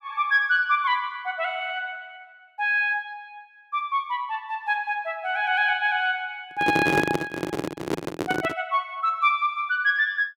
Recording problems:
handling noise; from 6.5 to 8.5 s; peak +4 dB vs average level

